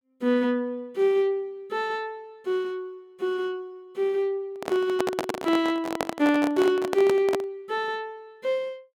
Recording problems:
handling noise; from 4.5 to 7.5 s; peak +3 dB vs average level

